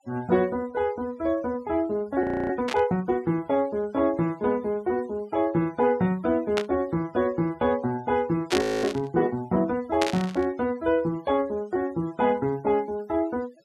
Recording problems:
denoising artefacts; signal-to-artefact ratio 24 dB
frozen audio; at 2 s and at 8.5 s
burst of static; 4 times, first at 2.5 s; peak +2 dB vs average level

